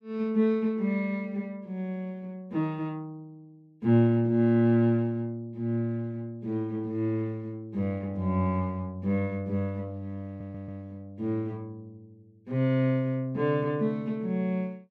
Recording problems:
audio stuttering; at 10 s

